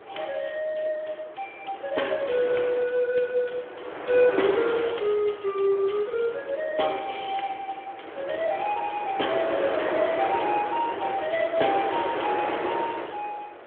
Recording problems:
phone line; 300 Hz to 3.4 kHz, Speex
wind on the microphone; below 1.3 kHz, SNR 6 dB

